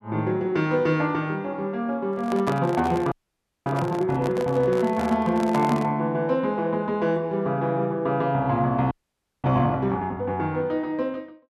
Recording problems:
handling noise; from 2 to 6 s; peak -2 dB vs average level
frozen audio; at 3 s for 0.5 s and at 9 s for 0.5 s

